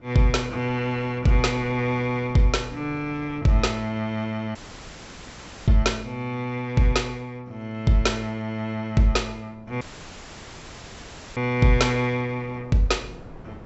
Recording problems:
low-pass filter; nothing above 7.7 kHz
wind on the microphone; below 490 Hz, SNR 23 dB
dropout; at 4.5 s for 1 s and at 10 s for 1.5 s

